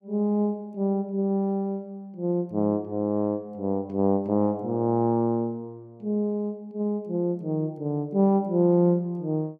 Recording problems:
none

